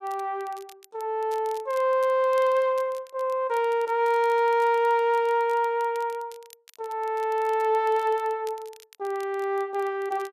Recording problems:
crackling; vinyl, SNR 27 dB

